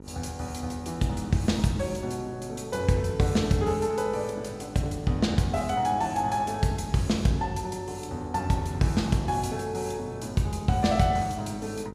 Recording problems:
hum; 50 Hz, harmonics up to 1.4 kHz, SNR 18 dB

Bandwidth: 15 kHz